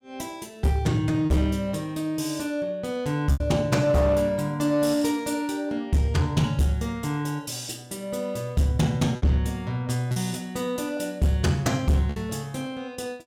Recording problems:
distorted audio; hard clipping, uneven, signal-to-distortion ratio 11 dB
lost packets; 2% of the sound replaced, filled with repeated pitch periods

